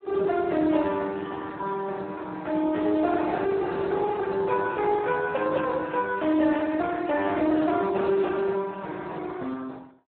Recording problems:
telephone audio; 190 Hz to 2.5 kHz, Speex

